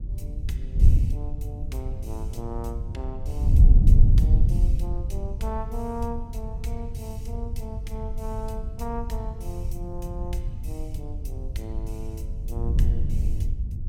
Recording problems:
wind on the microphone; below 78 Hz, SNR -10 dB

